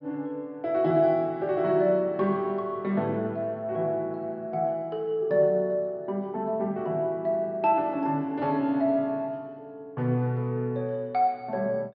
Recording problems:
treble missing; nothing above 5.5 kHz

